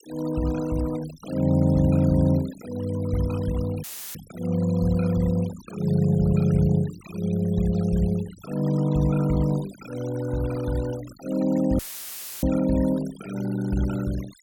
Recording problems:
denoising artefacts; signal-to-artefact ratio 19 dB
dropout; at 4 s and at 12 s for 0.5 s; filled with static

